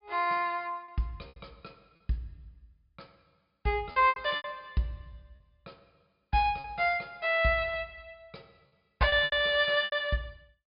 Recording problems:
low-pass filter; nothing above 5.2 kHz
lost packets; 8% of the sound replaced, filled with repeated pitch periods

